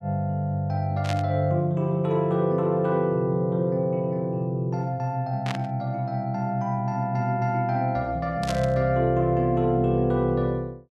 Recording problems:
static burst; at 1 s, at 5.5 s and at 8.5 s; peak -4 dB vs average level

